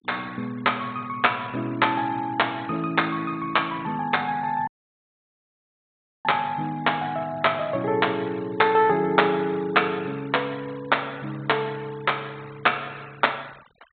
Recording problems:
treble missing; nothing above 4 kHz
noise reduction artefacts; signal-to-artefact ratio 24 dB
audio cutting out; at 4.5 s for 1.5 s

